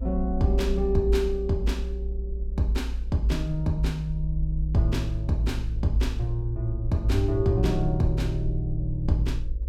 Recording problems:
hum; 50 Hz, harmonics up to 550 Hz, SNR 27 dB
low-frequency rumble; below 58 Hz, strongest tone 56 Hz, SNR 4 dB

